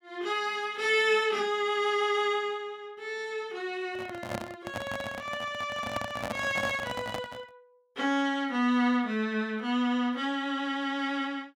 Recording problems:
microphone handling noise; from 4 to 7.5 s; peak -1 dB vs average level

